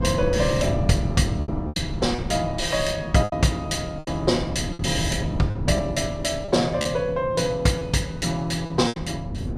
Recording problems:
wind noise; below 210 Hz, SNR 7 dB
lost packets; 7% of the sound replaced, filled with repeated pitch periods

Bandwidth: 14.5 kHz